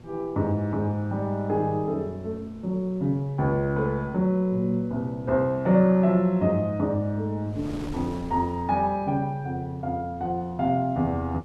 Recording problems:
electrical hum; 60 Hz, harmonics up to 1.1 kHz, SNR 25 dB
wind noise; below 520 Hz, SNR 22 dB

